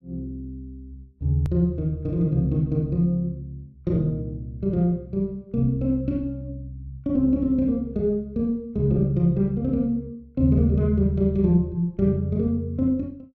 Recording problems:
hard cut with a click; at 1.5 s

